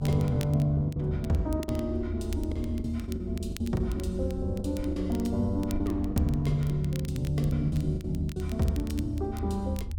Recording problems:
low-frequency rumble; below 82 Hz, strongest tone 80 Hz, SNR 6 dB
crackle; vinyl, SNR 19 dB
packet loss; 9% of the sound replaced, filled with the last packet

